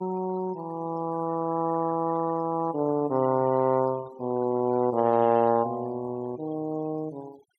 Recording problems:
denoising artefacts; signal-to-artefact ratio 22 dB

